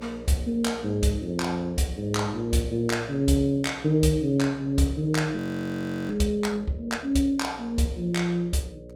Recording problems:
hum; 60 Hz, harmonics up to 600 Hz, SNR 19 dB
frozen audio; at 5.5 s for 0.5 s

